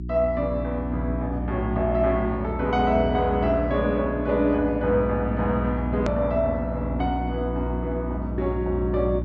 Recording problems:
treble missing; nothing above 8 kHz
hum; 60 Hz, harmonics up to 360 Hz, SNR 6 dB
edit click; at 6 s

